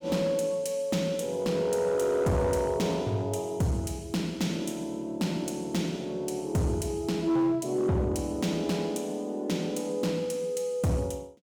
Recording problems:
distorted audio; hard clipping, signal-to-distortion ratio 12 dB

